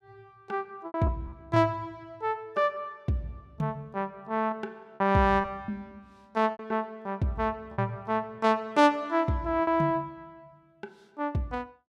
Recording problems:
packet loss; 5% of the sound replaced, filled with repeated pitch periods

